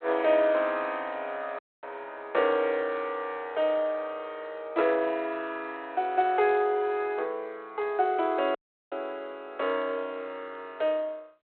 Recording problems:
phone line; 340 Hz to 3.3 kHz, G.726
audio cutting out; at 1.5 s and at 8.5 s

